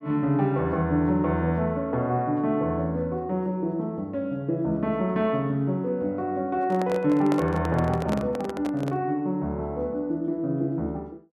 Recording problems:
microphone handling noise; from 6.5 to 9 s; peak -1 dB vs average level

